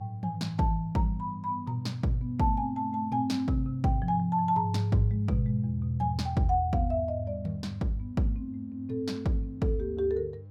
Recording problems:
electrical hum; 50 Hz, harmonics up to 500 Hz, SNR 18 dB

